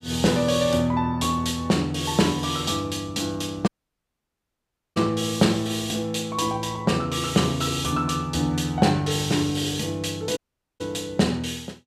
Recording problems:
dropout; at 3.5 s for 1.5 s and at 10 s

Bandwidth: 15.5 kHz